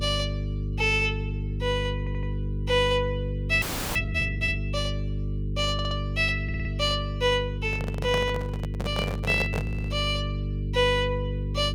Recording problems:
mains hum; 50 Hz, harmonics up to 450 Hz, SNR 4 dB
stutter; 4 times, first at 2 s
audio freezing; at 3.5 s
microphone handling noise; from 7.5 to 10 s; peak +1 dB vs average level

